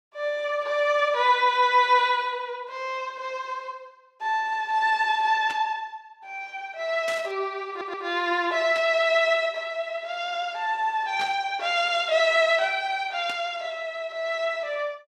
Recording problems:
static burst; 5 times, first at 5.5 s; peak -7 dB vs average level
stutter; at 7.5 s

